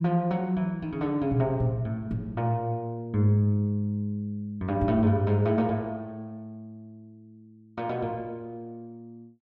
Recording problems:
none

